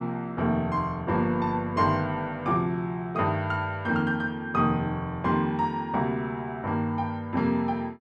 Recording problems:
none

